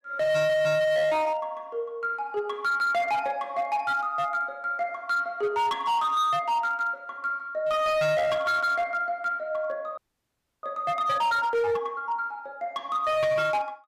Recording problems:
distorted audio; hard clipping, signal-to-distortion ratio 8 dB
frozen audio; at 10 s for 0.5 s

